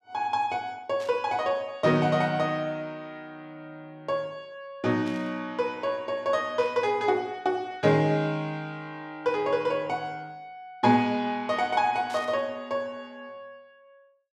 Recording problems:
static burst; 4 times, first at 1 s; peak -13 dB vs average level

